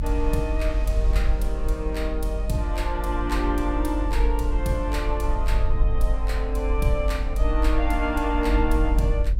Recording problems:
low-frequency rumble; below 48 Hz, strongest tone 46 Hz, SNR -2 dB
wind on the microphone; below 2.7 kHz, SNR 23 dB

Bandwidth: 16.5 kHz